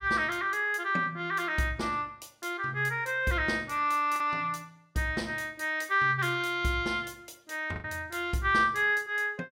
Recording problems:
lost packets; 1.3% of the sound replaced, filled with the last packet

